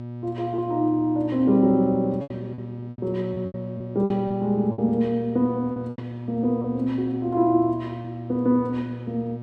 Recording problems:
electrical hum; 60 Hz, harmonics up to 960 Hz, SNR 11 dB
packet loss; 7% of the sound replaced, filled with repeated pitch periods

